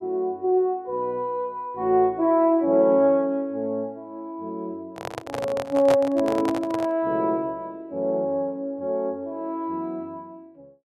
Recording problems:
microphone handling noise; from 5 to 7 s; peak +1 dB vs average level

